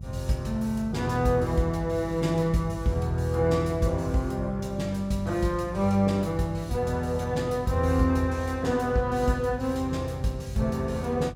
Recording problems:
hum; 50 Hz, harmonics up to 350 Hz, SNR 14 dB

